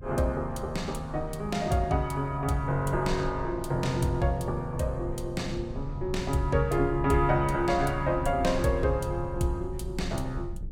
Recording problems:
low-frequency rumble; below 96 Hz, SNR 10 dB

